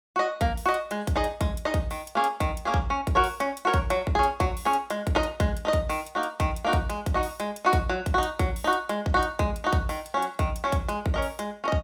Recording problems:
none

